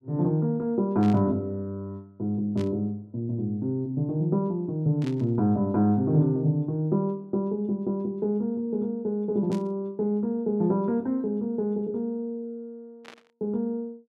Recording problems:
static burst; 5 times, first at 1 s; peak -12 dB vs average level

